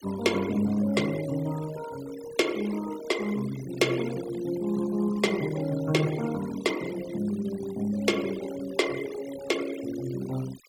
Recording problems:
denoising artefacts; signal-to-artefact ratio 15 dB

